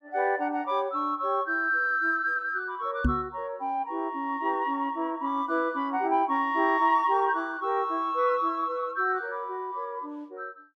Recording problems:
microphone thump; at 3 s; peak +5 dB vs average level

